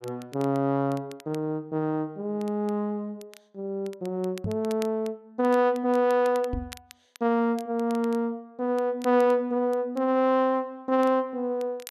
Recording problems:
crackle; vinyl, SNR 24 dB
microphone bump; at 4.5 s and at 6.5 s; peak -1 dB vs average level

